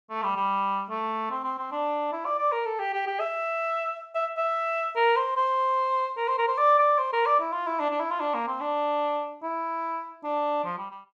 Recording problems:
none

